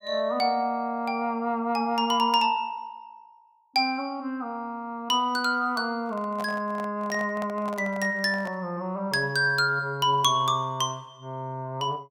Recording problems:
microphone handling noise; from 6 to 8.5 s; peak -7 dB vs average level

